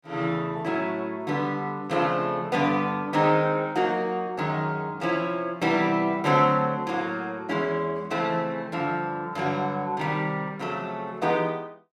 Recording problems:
none

